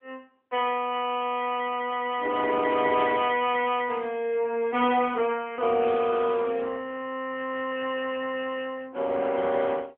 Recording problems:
phone line; 220 Hz to 3.4 kHz, AMR-NB

